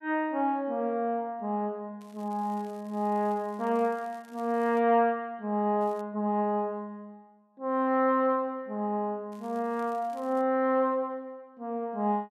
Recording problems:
crackling; from 2 to 5 s, at 6 s and from 9.5 to 10 s; loose cable, SNR 30 dB

